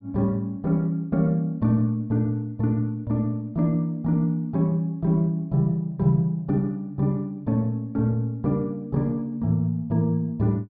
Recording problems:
treble missing; nothing above 5.5 kHz

